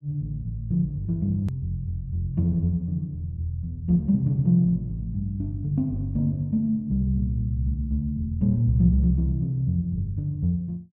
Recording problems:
edit click; at 1.5 s

